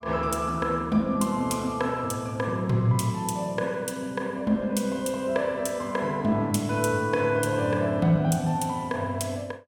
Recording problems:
none

